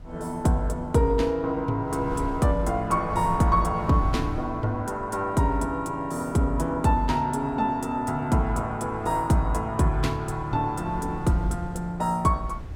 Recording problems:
wind noise; below 120 Hz, SNR 15 dB

